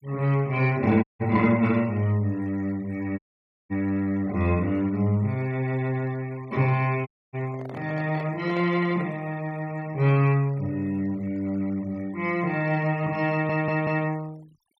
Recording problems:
denoising artefacts; signal-to-artefact ratio 25 dB
dropout; at 1 s, at 3 s for 0.5 s and at 7 s
handling noise; from 7.5 to 9.5 s; peak -11 dB vs average level
stutter; at 13 s

